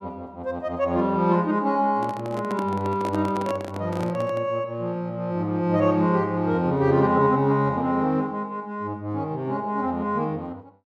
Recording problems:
handling noise; from 2 to 4.5 s; peak -3 dB vs average level

